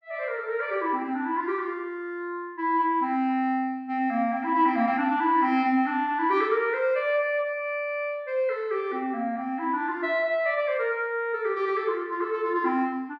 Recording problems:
none

